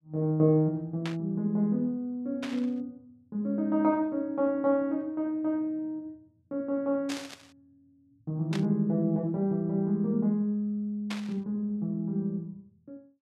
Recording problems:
static burst; 5 times, first at 1 s; peak -4 dB vs average level

